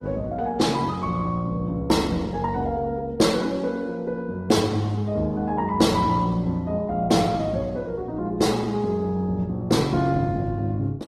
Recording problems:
lossy codec; Opus, log-spectral distance 2 dB, nothing above 18.9 kHz

